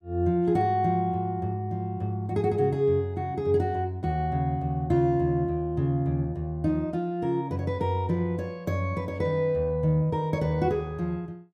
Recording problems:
none

